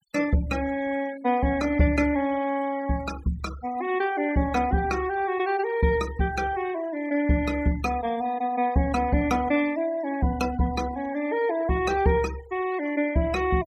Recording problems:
denoising artefacts; signal-to-artefact ratio 18 dB

